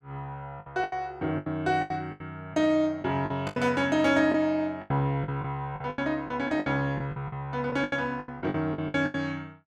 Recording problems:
packet loss; 15% of the sound replaced, filled with the last packet

